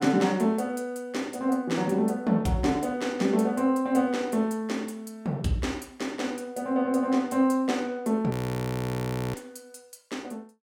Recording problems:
frozen audio; at 8.5 s for 1 s

